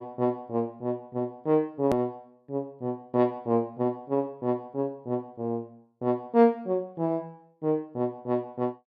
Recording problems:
edit click; at 2 s

